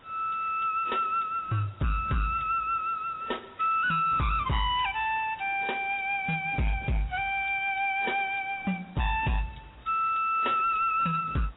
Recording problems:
lossy codec; AAC, log-spectral distance 7 dB
distortion; hard clipping, uneven, signal-to-distortion ratio 10 dB
background hiss; SNR 27 dB

